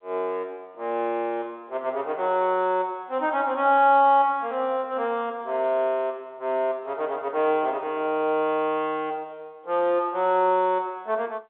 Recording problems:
telephone audio; 280 Hz to 3.9 kHz, G.711

